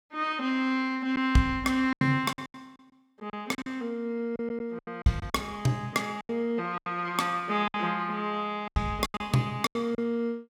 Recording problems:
lost packets; 11% of the sound replaced, filled with silence

